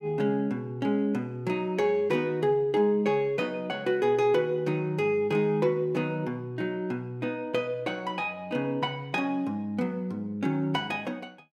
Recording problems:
none

